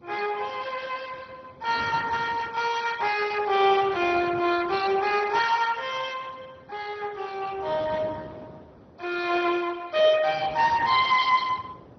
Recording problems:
lossy compression; Speex, then MP2, log-spectral distance 5 dB, nothing above 6 kHz
wind noise; below 640 Hz, SNR 19 dB

